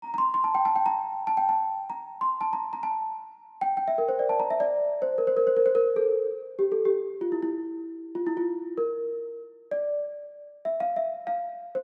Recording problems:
none

